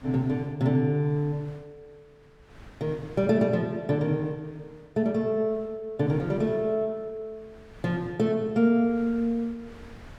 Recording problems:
wind noise; below 960 Hz, SNR 25 dB

